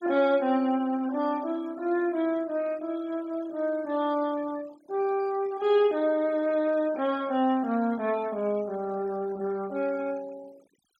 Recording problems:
denoising artefacts; signal-to-artefact ratio 24 dB

